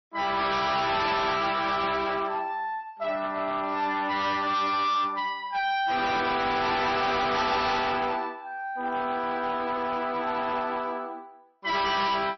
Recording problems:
lossy compression; MP3, log-spectral distance 3 dB, nothing above 5.8 kHz
distorted audio; hard clipping, signal-to-distortion ratio 7 dB

